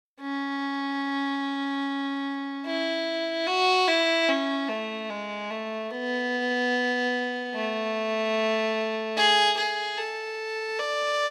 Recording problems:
none

